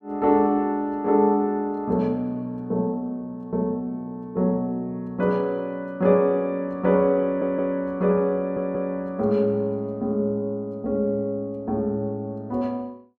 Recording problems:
audio stuttering; at 7.5 s and at 8.5 s

